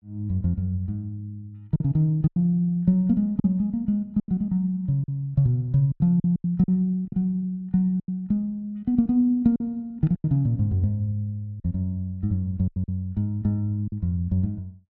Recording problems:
lost packets; 7% of the sound replaced, filled with silence

